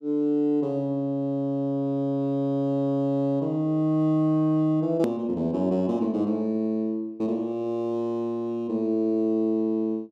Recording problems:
edit click; at 5 s

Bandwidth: 12.5 kHz